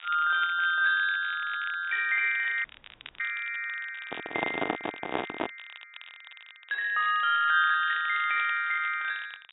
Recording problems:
treble cut off; nothing above 3.2 kHz
codec artefacts; AAC, log-spectral distance 2 dB
crackling; vinyl, SNR 20 dB
frozen audio; at 2.5 s for 0.5 s
microphone handling noise; from 4 to 5.5 s; peak +2 dB vs average level

